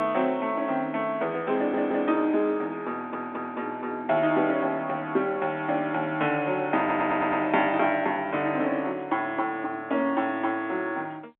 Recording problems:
phone line; 240 Hz to 3.7 kHz, G.711
audio stuttering; at 1.5 s, at 3 s and at 7 s

